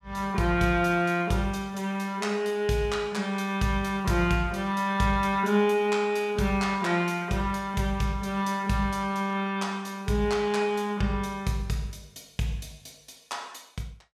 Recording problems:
none

